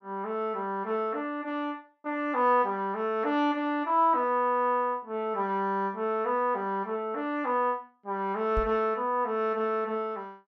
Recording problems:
microphone thump; at 8.5 s; peak -1 dB vs average level

